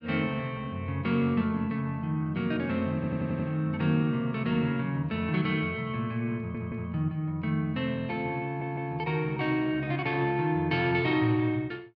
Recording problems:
audio stuttering; at 3 s, at 6.5 s and at 8.5 s

